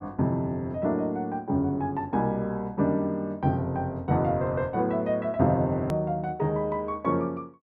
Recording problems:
edit click; at 6 s

